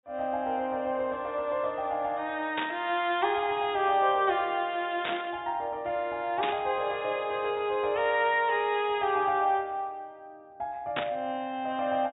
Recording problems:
treble missing; nothing above 4 kHz
burst of static; 4 times, first at 2.5 s; peak +2 dB vs average level

